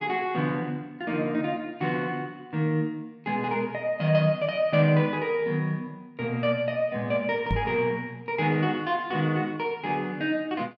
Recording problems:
knock on the microphone; at 7.5 s; peak +3 dB vs average level

